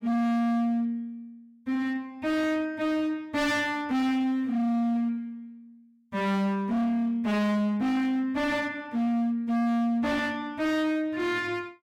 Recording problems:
distortion; hard clipping, signal-to-distortion ratio 6 dB

